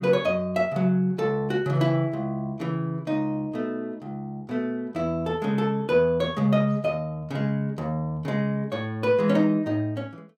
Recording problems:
none

